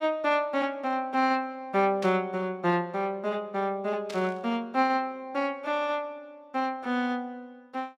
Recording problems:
static burst; at 2 s and at 4 s; peak -7 dB vs average level

